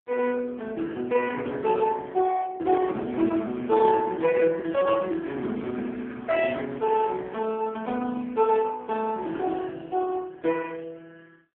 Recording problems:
phone line; 190 Hz to 3.3 kHz, AMR-NB

